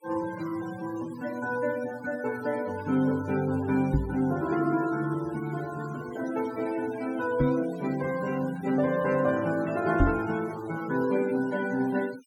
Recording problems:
noise reduction artefacts; signal-to-artefact ratio 17 dB
microphone thump; at 4 s, at 7.5 s and at 10 s; peak +8 dB vs average level

